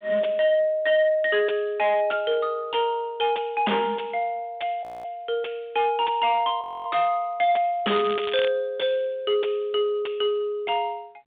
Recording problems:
phone line; 280 Hz to 3.6 kHz, G.726
distorted audio; hard clipping, signal-to-distortion ratio 5 dB
frozen audio; at 5 s and at 6.5 s
crackle; at 8 s; loose cable, SNR 11 dB

